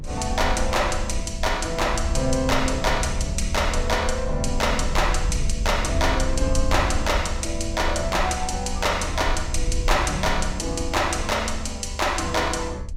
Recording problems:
rumble; below 72 Hz, SNR 6 dB

